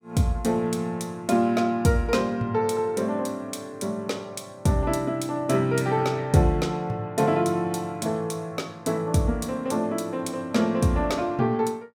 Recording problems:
none

